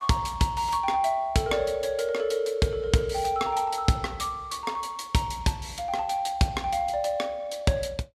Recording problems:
none

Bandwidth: 14.5 kHz